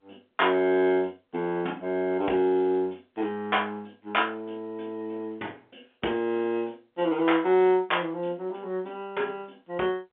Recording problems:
telephone audio; 240 Hz to 3.5 kHz, G.711

